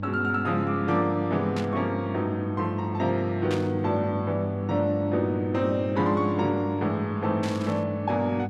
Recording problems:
hum; 50 Hz, harmonics up to 600 Hz, SNR 6 dB
burst of static; at 1.5 s, at 3.5 s and at 7.5 s; peak -5 dB vs average level

